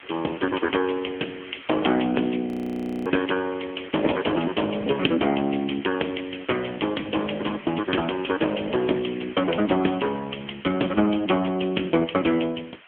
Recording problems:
phone line; 240 Hz to 3.3 kHz, AMR-NB
background hiss; SNR 18 dB
frozen audio; at 2.5 s for 0.5 s

